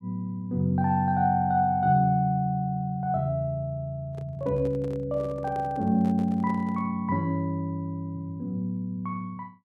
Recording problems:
microphone handling noise; from 4 to 7 s; peak -11 dB vs average level

